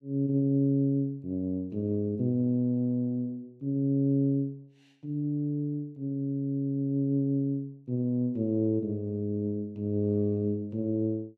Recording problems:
none

